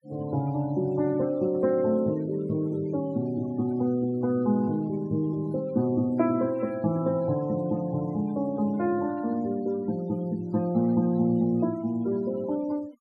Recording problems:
denoising artefacts; signal-to-artefact ratio 24 dB

